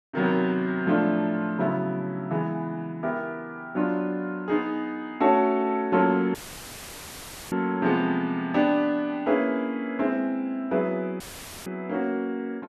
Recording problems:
dropout; at 6.5 s for 1 s and at 11 s; filled with static

